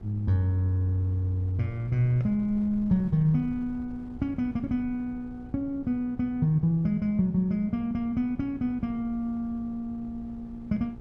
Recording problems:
electrical hum; 60 Hz, harmonics up to 1.3 kHz, SNR 21 dB
wind noise; below 110 Hz, SNR 21 dB

